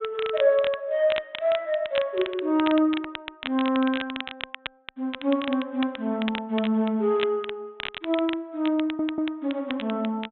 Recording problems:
low-pass filter; nothing above 3.7 kHz
crackle; vinyl, SNR 11 dB
stutter; at 9 s

